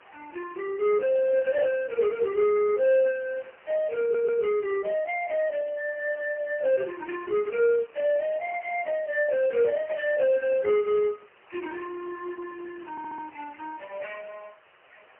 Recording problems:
telephone audio; 320 Hz to 3 kHz, AMR-NB, then MP3
background hiss; SNR 28 dB
stutter; at 4 s and at 13 s

